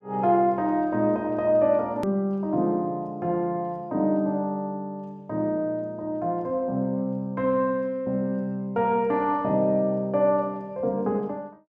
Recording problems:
edit click; at 2 s

